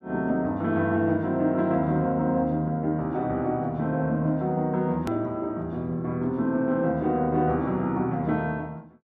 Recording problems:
hard cut with a click; at 5 s

